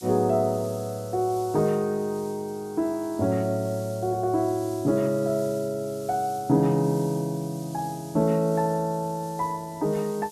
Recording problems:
background hiss; slope +5 dB per octave, SNR 20 dB

